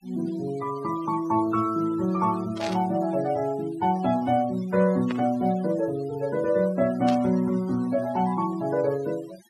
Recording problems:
noise reduction artefacts; signal-to-artefact ratio 20 dB
burst of static; at 2.5 s, at 5 s and at 7 s; peak -7 dB vs average level

